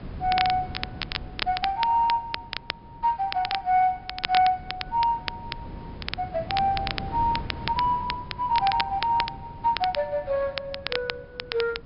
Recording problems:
low-pass filter; nothing above 5.5 kHz
wind on the microphone; below 280 Hz, SNR 15 dB
crackle; vinyl, SNR 8 dB

